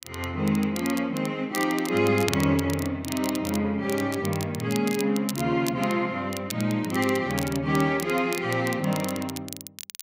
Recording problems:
crackle; vinyl, SNR 12 dB

